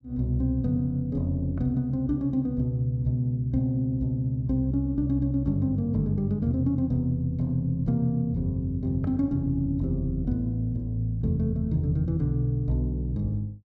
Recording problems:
none

